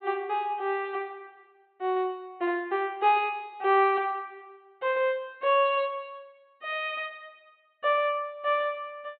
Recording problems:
treble cut off; nothing above 4 kHz

